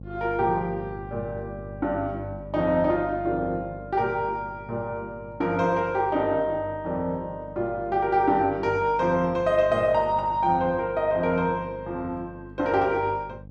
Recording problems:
hum; 50 Hz, harmonics up to 600 Hz, SNR 17 dB

